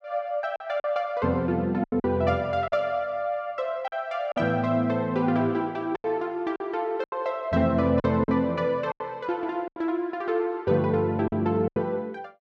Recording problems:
lost packets; 7% of the sound replaced, filled with silence

